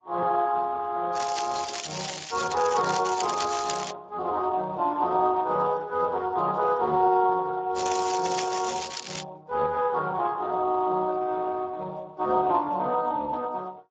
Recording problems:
lossy compression; Vorbis, then Speex, log-spectral distance 6 dB
crackle; from 1 to 4 s and from 8 to 9 s; loose cable, SNR 8 dB

